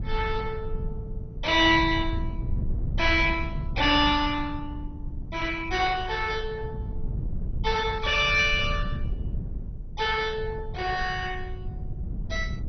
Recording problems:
lossy compression; MP2, then MP2, log-spectral distance 3 dB, nothing above 5.7 kHz
wind noise; below 110 Hz, SNR 9 dB

